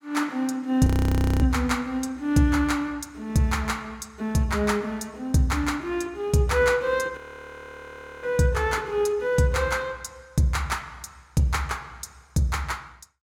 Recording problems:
frozen audio; at 1 s for 0.5 s and at 7 s for 1 s

